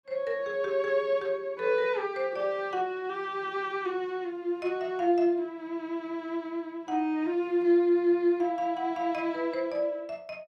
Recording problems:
none

